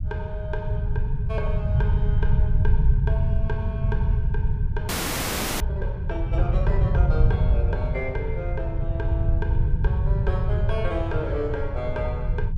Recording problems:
rumble; below 110 Hz, SNR -8 dB
audio freezing; at 5 s for 0.5 s

